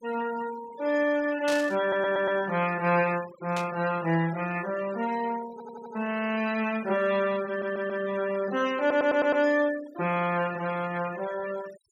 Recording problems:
denoising artefacts; signal-to-artefact ratio 18 dB
static burst; at 1.5 s and at 3.5 s; peak -4 dB vs average level
audio stuttering; 4 times, first at 2 s

